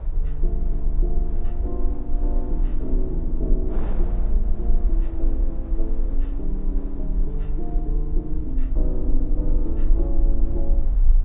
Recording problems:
treble missing; nothing above 4 kHz
low-frequency rumble; below 38 Hz, strongest tone 22 Hz, SNR -8 dB
wind on the microphone; below 500 Hz, SNR 10 dB

